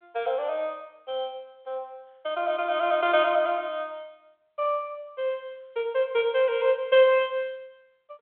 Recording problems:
phone line; 390 Hz to 3.6 kHz, G.726

